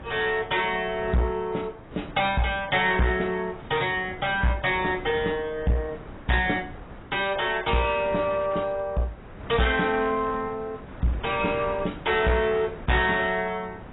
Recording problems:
lossy codec; AAC, log-spectral distance 4 dB, nothing above 3.7 kHz
distortion; hard clipping, uneven, signal-to-distortion ratio 10 dB
wind noise; below 810 Hz, SNR 17 dB

